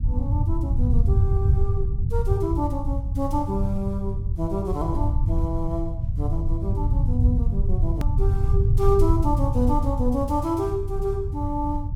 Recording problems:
rumble; below 100 Hz, SNR -3 dB
click at an edit; at 8 s

